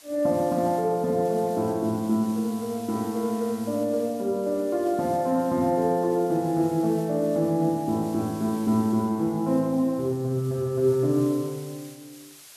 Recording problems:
hiss; slope +2 dB per octave, SNR 21 dB

